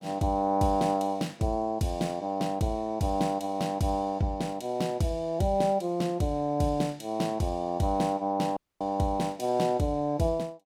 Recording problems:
dropout; at 8.5 s

